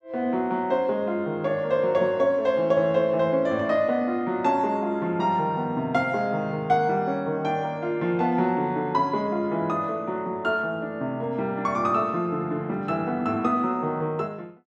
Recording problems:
none

